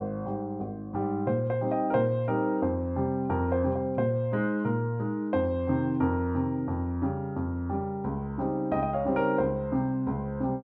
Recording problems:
none

